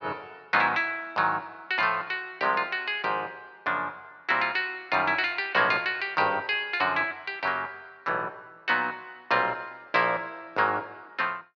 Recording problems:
none

